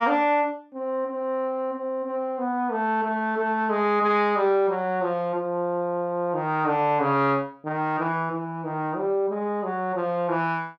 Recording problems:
none

